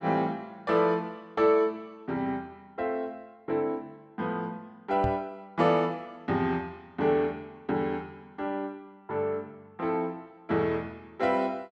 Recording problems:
knock on the microphone; at 5 s; peak 0 dB vs average level

